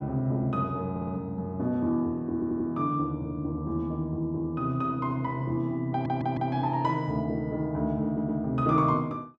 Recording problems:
audio stuttering; 4 times, first at 1 s

